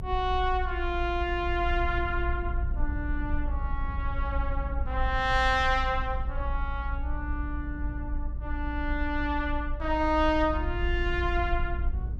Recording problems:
low-frequency rumble; below 58 Hz, SNR 4 dB

